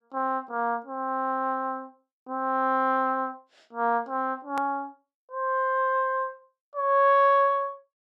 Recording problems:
click at an edit; at 4.5 s

